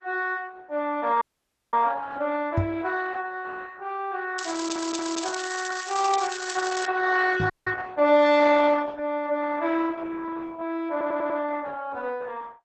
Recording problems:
codec artefacts; Opus, log-spectral distance 6 dB, nothing above 7.6 kHz
audio cutting out; at 1 s for 0.5 s and at 7.5 s
microphone bump; at 2.5 s and at 7.5 s; peak +6 dB vs average level
crackle; from 4.5 to 7 s; loose cable, SNR 10 dB
audio stuttering; at 4.5 s and at 11 s

